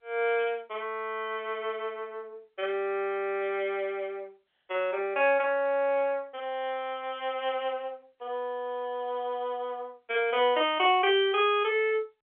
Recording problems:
telephone audio; 320 Hz to 3.6 kHz, G.711

